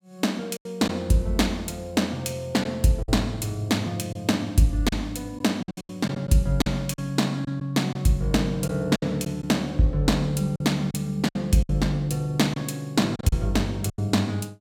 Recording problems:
packet loss; 7% of the sound replaced, filled with silence

